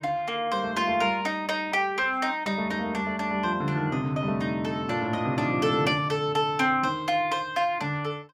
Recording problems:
none

